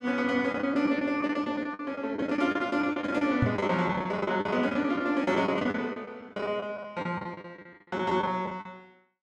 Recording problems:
lost packets; 17% of the sound replaced, filled with the last packet
knock on the microphone; at 3.5 s; peak +5 dB vs average level

